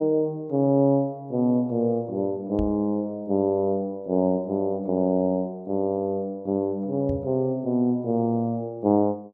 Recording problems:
microphone bump; at 2.5 s and at 7 s; peak -4 dB vs average level

